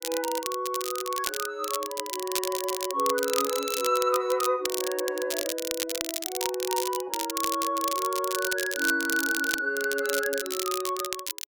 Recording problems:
crackle; vinyl, SNR 4 dB

